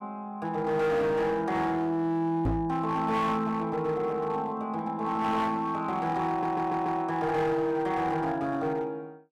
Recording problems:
distortion; hard clipping, uneven, signal-to-distortion ratio 11 dB
microphone bump; at 2.5 s; peak +4 dB vs average level
stutter; at 6.5 s

